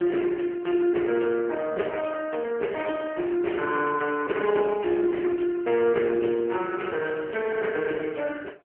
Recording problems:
telephone audio; 300 Hz to 3.1 kHz, AMR-NB

